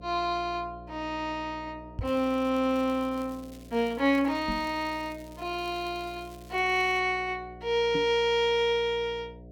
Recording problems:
electrical hum; 60 Hz, harmonics up to 720 Hz, SNR 20 dB
microphone thump; at 2 s, at 4.5 s and at 8 s; peak -2 dB vs average level
crackle; from 2 to 7 s; loose cable, SNR 25 dB

